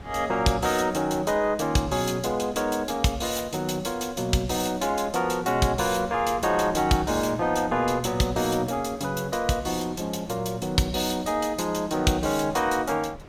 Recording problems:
wind noise; below 520 Hz, SNR 20 dB

